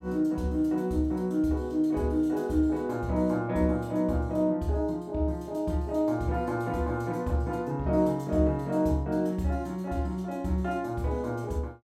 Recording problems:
none

